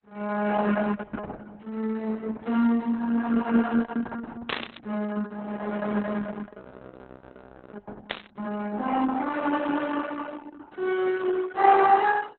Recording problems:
lossy codec; Opus, log-spectral distance 4 dB, nothing above 4 kHz
burst of static; at 4.5 s and at 8 s; peak +2 dB vs average level
audio freezing; at 6.5 s for 1 s

